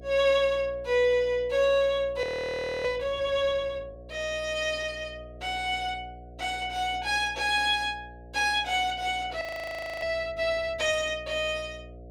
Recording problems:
mains hum; 60 Hz, harmonics up to 720 Hz, SNR 20 dB
frozen audio; at 2 s for 0.5 s and at 9.5 s for 0.5 s

